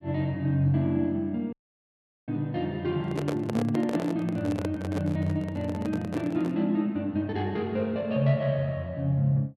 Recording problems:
audio cutting out; at 1.5 s for 0.5 s
microphone handling noise; from 3 to 6.5 s; peak 0 dB vs average level

